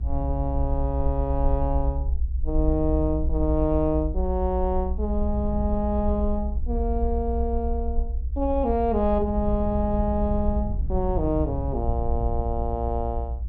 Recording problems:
rumble; below 64 Hz, SNR 2 dB
wind noise; below 110 Hz, SNR 10 dB

